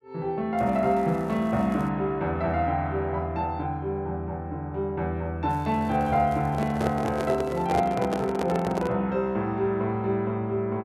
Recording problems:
crackling; from 0.5 to 2 s and from 5.5 to 7.5 s; loose cable, SNR 29 dB
microphone handling noise; from 6.5 to 9 s; peak +1 dB vs average level

